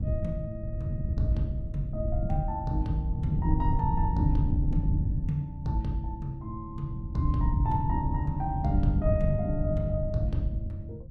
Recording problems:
wind noise; below 120 Hz, SNR 0 dB

